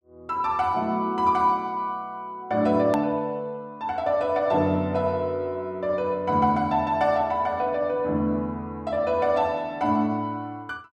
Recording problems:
edit click; at 3 s

